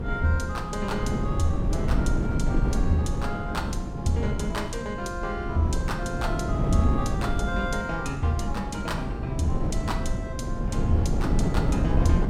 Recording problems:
wind on the microphone; below 200 Hz, SNR -2 dB

